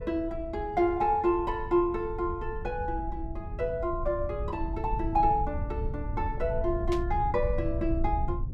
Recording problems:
low-frequency rumble; below 84 Hz, SNR 7 dB
static burst; at 7 s; peak -6 dB vs average level

